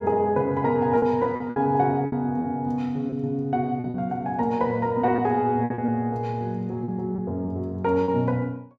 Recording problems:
lost packets; 7% of the sound replaced, filled with repeated pitch periods

